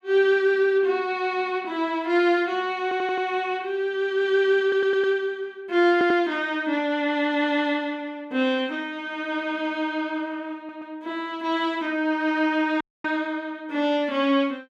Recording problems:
audio stuttering; 4 times, first at 3 s
dropout; at 13 s

